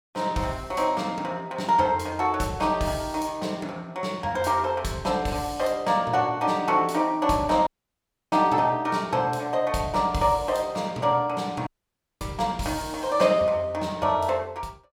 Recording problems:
audio cutting out; at 7.5 s for 0.5 s and at 12 s for 0.5 s

